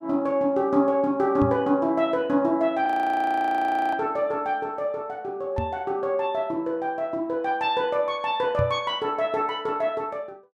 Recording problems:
microphone bump; at 1.5 s, at 5.5 s and at 8.5 s; peak +1 dB vs average level
audio freezing; at 3 s for 1 s

